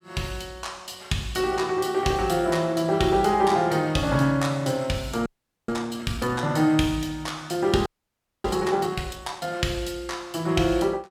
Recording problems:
frozen audio; at 5.5 s and at 8 s for 0.5 s

